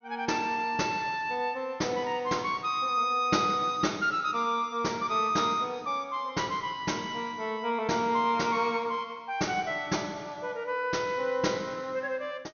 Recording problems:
treble cut off; nothing above 6.6 kHz

